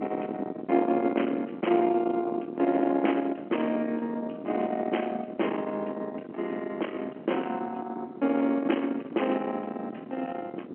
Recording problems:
telephone audio; 240 Hz to 3.2 kHz, G.711
distortion; soft clipping, signal-to-distortion ratio 15 dB
wind noise; below 700 Hz, SNR 8 dB

